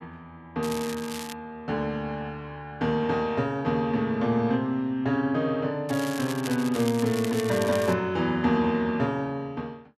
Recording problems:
crackle; at 0.5 s and from 6 to 8 s; loose cable, SNR 12 dB

